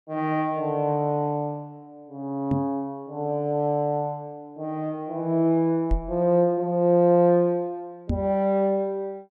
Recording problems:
knock on the microphone; at 2.5 s, at 6 s and at 8 s; peak +2 dB vs average level

